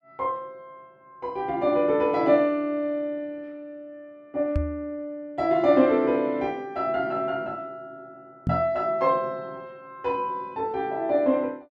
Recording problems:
microphone bump; at 4.5 s and at 8.5 s; peak +3 dB vs average level

